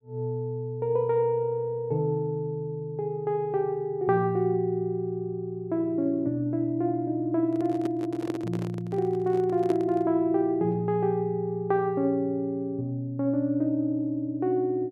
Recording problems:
handling noise; from 7.5 to 10 s; peak -3 dB vs average level

